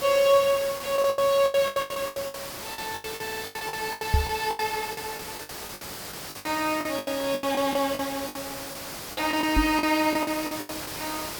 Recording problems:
background hiss; slope -2 dB per octave, SNR 9 dB
packet loss; 19% of the sound replaced, filled with the last packet
stutter; at 3 s
knock on the microphone; at 4 s and at 9.5 s; peak +7 dB vs average level

